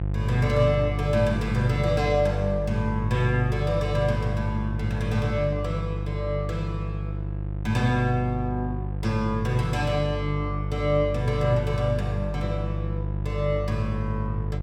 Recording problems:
hum; 50 Hz, harmonics up to 700 Hz, SNR 3 dB

